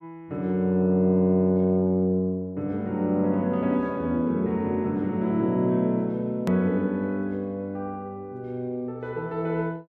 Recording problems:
click at an edit; at 6.5 s

